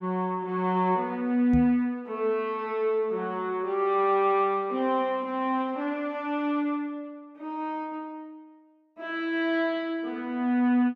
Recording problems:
knock on the microphone; at 1.5 s; peak +1 dB vs average level

